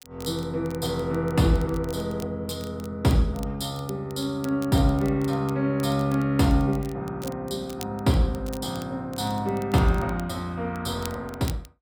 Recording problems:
crackle; vinyl, SNR 21 dB

